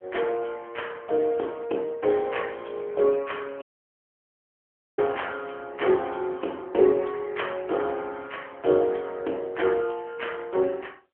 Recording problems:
phone line; 300 Hz to 3.2 kHz, AMR-NB
audio cutting out; at 3.5 s for 1.5 s

